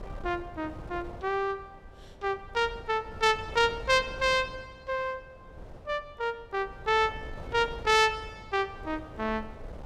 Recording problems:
wind noise; below 480 Hz, SNR 17 dB

